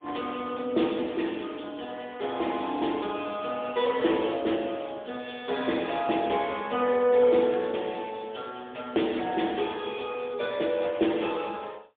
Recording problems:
telephone audio; 240 Hz to 3.7 kHz, AMR-NB, then MP3

